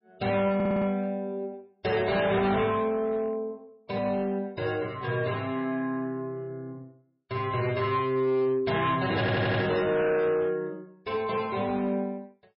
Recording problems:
lossy compression; MP3, log-spectral distance 2 dB, nothing above 5.3 kHz
distorted audio; hard clipping, uneven, signal-to-distortion ratio 11 dB
audio stuttering; at 0.5 s and at 9 s

